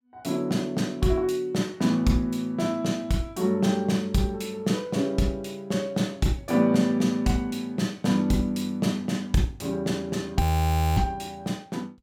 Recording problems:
audio freezing; at 10 s for 0.5 s

